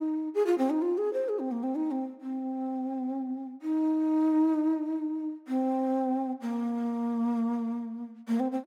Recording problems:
none

